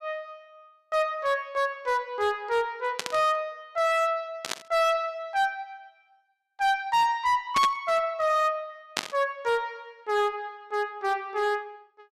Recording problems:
distorted audio; hard clipping, signal-to-distortion ratio 10 dB
burst of static; 4 times, first at 3 s; peak +3 dB vs average level

